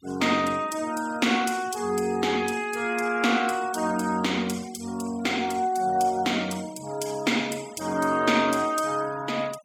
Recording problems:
denoising artefacts; signal-to-artefact ratio 20 dB

